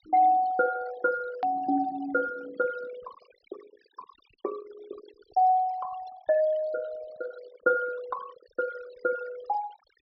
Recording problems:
treble cut off; nothing above 5.5 kHz
denoising artefacts; signal-to-artefact ratio 18 dB
click at an edit; at 1.5 s

